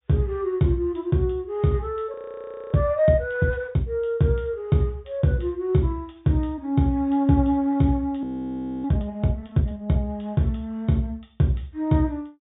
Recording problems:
low-pass filter; nothing above 4 kHz
audio freezing; at 2 s for 0.5 s and at 8 s for 0.5 s

